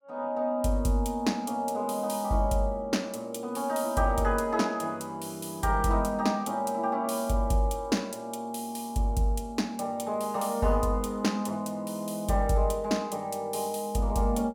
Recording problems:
none

